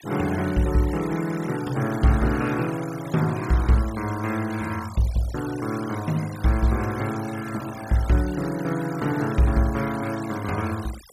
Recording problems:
denoising artefacts; signal-to-artefact ratio 16 dB

